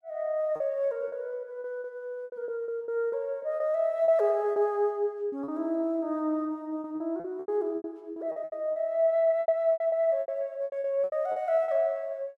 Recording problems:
packet loss; 13% of the sound replaced, filled with repeated pitch periods

